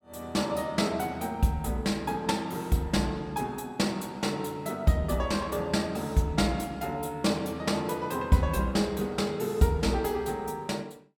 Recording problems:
none

